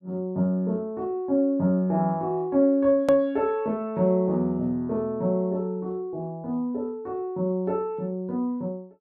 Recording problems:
hard cut with a click; at 3 s

